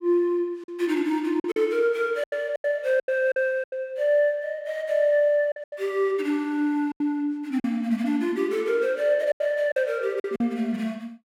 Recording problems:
packet loss; 8% of the sound replaced, filled with silence

